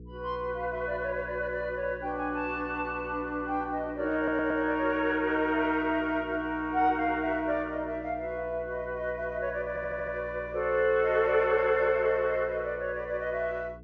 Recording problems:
treble cut off; nothing above 6.7 kHz
hum; 60 Hz, harmonics up to 480 Hz, SNR 19 dB
stutter; at 4 s and at 9.5 s

